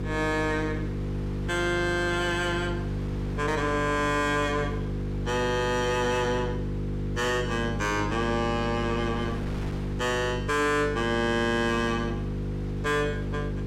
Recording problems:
distorted audio; soft clipping, signal-to-distortion ratio 10 dB
mains hum; 50 Hz, harmonics up to 500 Hz, SNR 5 dB
wind on the microphone; below 1.2 kHz, SNR 18 dB

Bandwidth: 16 kHz